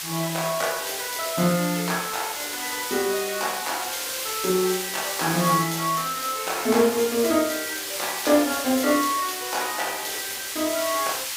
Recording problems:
hiss; slope +4 dB per octave, SNR 4 dB

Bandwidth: 15.5 kHz